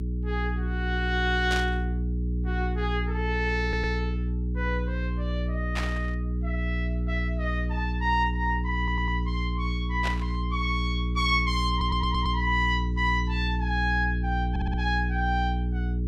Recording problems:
hum; 60 Hz, harmonics up to 420 Hz, SNR 0 dB
burst of static; at 1.5 s, at 6 s and at 10 s; peak +1 dB vs average level
audio stuttering; 4 times, first at 3.5 s

